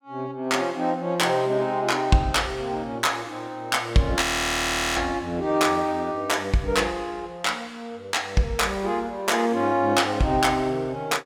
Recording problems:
audio freezing; at 4 s for 0.5 s

